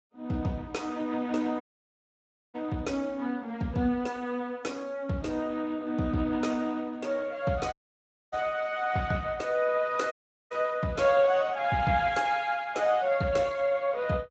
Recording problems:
lossy codec; Speex, log-spectral distance 3 dB, nothing above 7.3 kHz
audio cutting out; at 1.5 s for 1 s, at 7.5 s for 0.5 s and at 10 s

